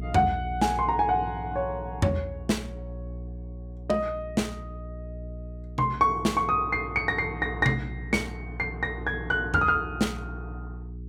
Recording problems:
electrical hum; 60 Hz, harmonics up to 420 Hz, SNR 12 dB

